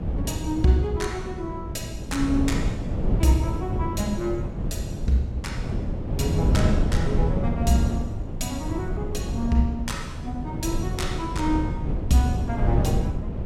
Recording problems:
wind noise; below 180 Hz, SNR 1 dB

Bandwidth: 16.5 kHz